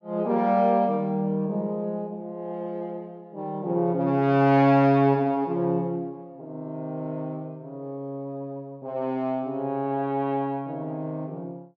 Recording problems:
none

